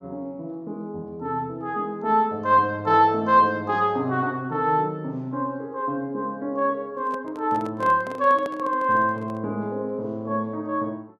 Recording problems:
microphone handling noise; from 7 to 9.5 s; peak -9 dB vs average level

